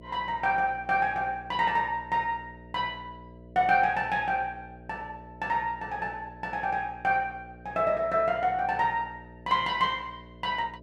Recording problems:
hum; 60 Hz, harmonics up to 660 Hz, SNR 21 dB

